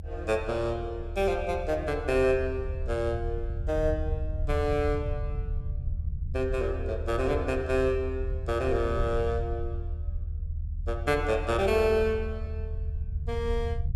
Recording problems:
rumble; below 80 Hz, SNR 5 dB

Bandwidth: 15 kHz